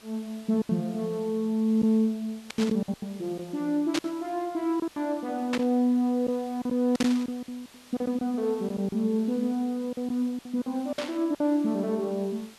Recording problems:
background hiss; slope -1 dB per octave, SNR 23 dB
packet loss; 9% of the sound replaced, filled with silence
burst of static; 5 times, first at 2.5 s; peak +1 dB vs average level

